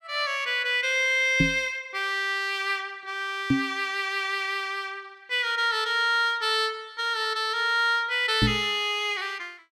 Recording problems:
microphone thump; at 1.5 s, at 3.5 s and at 8.5 s; peak +5 dB vs average level

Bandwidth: 14.5 kHz